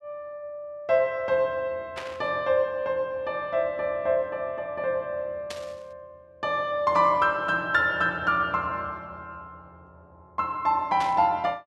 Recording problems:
static burst; at 2 s, at 5.5 s and at 11 s; peak -6 dB vs average level

